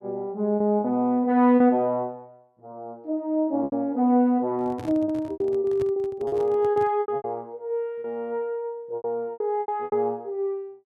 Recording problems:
packet loss; 10% of the sound replaced, filled with repeated pitch periods
handling noise; from 4.5 to 7 s; peak -8 dB vs average level

